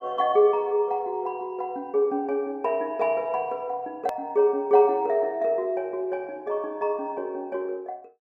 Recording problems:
edit click; at 4 s

